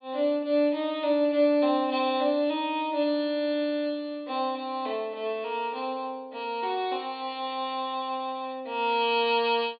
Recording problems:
treble cut off; nothing above 4.9 kHz

